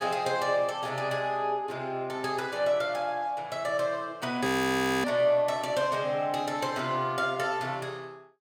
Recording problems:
audio freezing; at 4.5 s for 0.5 s

